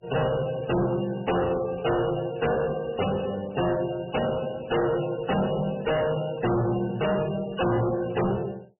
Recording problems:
lossy compression; MP3, log-spectral distance 4 dB, nothing above 2.9 kHz
distorted audio; hard clipping, uneven, signal-to-distortion ratio 6 dB

